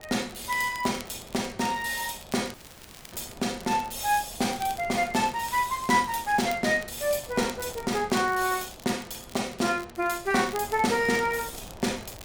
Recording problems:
wind on the microphone; below 740 Hz, SNR 21 dB
crackling; vinyl, SNR 19 dB
dropout; at 2.5 s for 0.5 s

